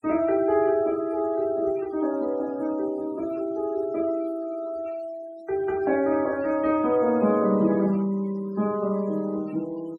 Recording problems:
denoising artefacts; signal-to-artefact ratio 24 dB

